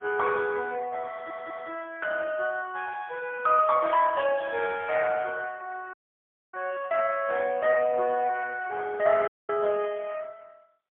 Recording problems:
telephone audio; 260 Hz to 2.5 kHz, AMR-NB, then MP3
stutter; at 1 s
audio cutting out; at 6 s for 0.5 s and at 9.5 s

